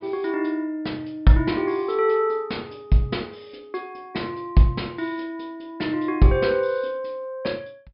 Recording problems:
treble cut off; nothing above 5.5 kHz

